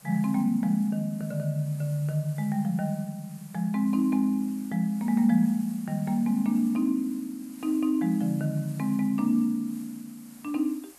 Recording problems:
hiss; slope -2 dB per octave, SNR 23 dB

